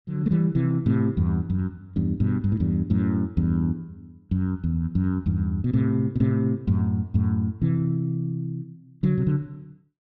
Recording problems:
none

